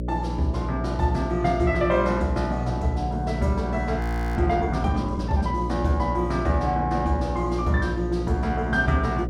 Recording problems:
hum; 60 Hz, harmonics up to 600 Hz, SNR 5 dB
audio freezing; at 4 s

